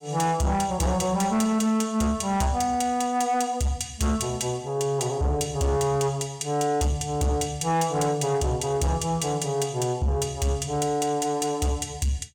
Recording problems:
distorted audio; soft clipping, signal-to-distortion ratio 11 dB

